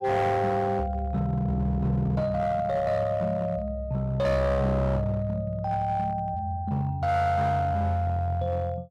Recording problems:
distortion; hard clipping, uneven, signal-to-distortion ratio 11 dB

